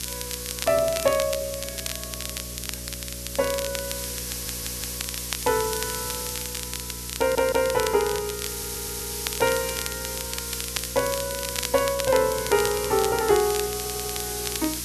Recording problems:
hum; 60 Hz, harmonics up to 480 Hz, SNR 15 dB
hiss; slope +3 dB per octave, SNR 6 dB
crackling; vinyl, SNR 9 dB
stutter; 4 times, first at 4.5 s

